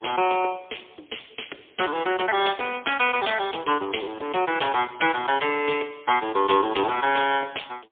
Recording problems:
telephone audio; 300 Hz to 3.4 kHz, AMR-NB, then MP3

